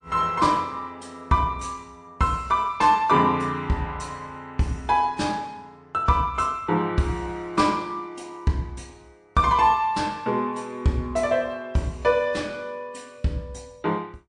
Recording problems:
codec artefacts; MP3, log-spectral distance 2 dB, nothing above 8.5 kHz

